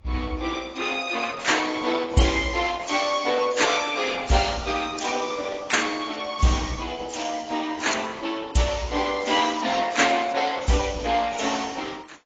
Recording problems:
codec artefacts; Opus, then AAC, log-spectral distance 6 dB, nothing above 7.3 kHz

